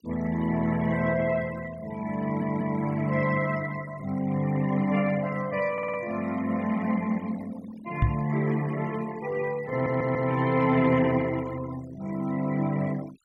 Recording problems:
noise reduction artefacts; signal-to-artefact ratio 19 dB
stutter; at 2 s, at 5.5 s and at 9.5 s
knock on the microphone; at 8 s; peak +7 dB vs average level

